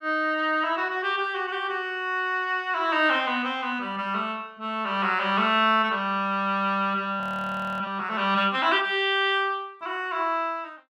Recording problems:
frozen audio; at 7 s for 0.5 s

